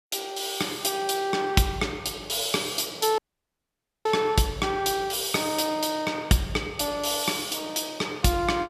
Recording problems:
dropout; at 3 s for 1 s

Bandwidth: 14.5 kHz